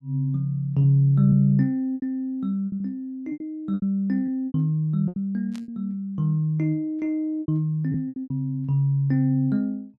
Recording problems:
packet loss; 9% of the sound replaced, filled with repeated pitch periods
burst of static; at 5.5 s; peak -16 dB vs average level

